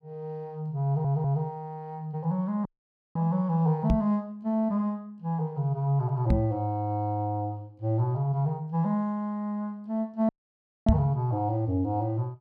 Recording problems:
audio stuttering; at 1 s
audio cutting out; at 2.5 s for 0.5 s and at 10 s for 0.5 s
microphone thump; at 4 s, at 6.5 s and at 11 s; peak +10 dB vs average level

